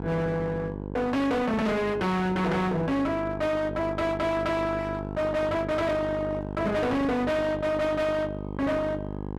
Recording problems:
distorted audio; hard clipping, uneven, signal-to-distortion ratio 7 dB
hum; 50 Hz, harmonics up to 1.1 kHz, SNR 8 dB

